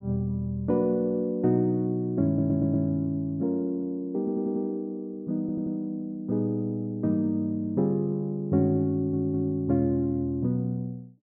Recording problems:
audio stuttering; 4 times, first at 2.5 s

